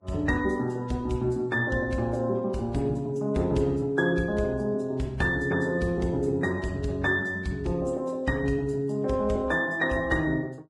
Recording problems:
codec artefacts; Vorbis, log-spectral distance 2 dB, nothing above 11 kHz

